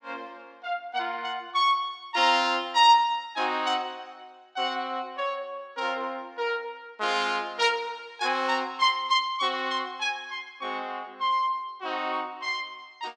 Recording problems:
none

